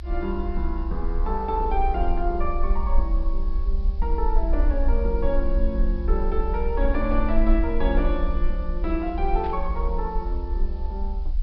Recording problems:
treble missing; nothing above 5.5 kHz
hiss; slope 0 dB per octave, SNR 30 dB
low-frequency rumble; below 48 Hz, SNR -1 dB
burst of static; at 9.5 s; peak -11 dB vs average level

